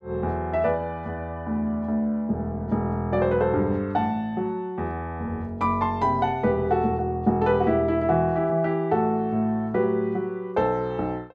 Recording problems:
none

